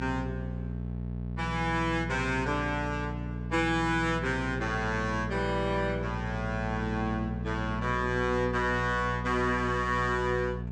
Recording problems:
hum; 60 Hz, harmonics up to 660 Hz, SNR 5 dB

